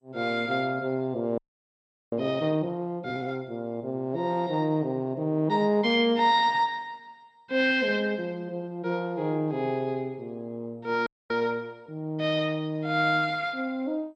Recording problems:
lossy compression; MP2, log-spectral distance 2 dB
audio freezing; at 1.5 s for 0.5 s and at 11 s

